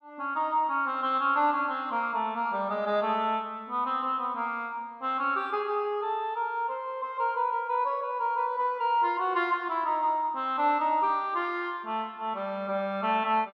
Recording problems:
none

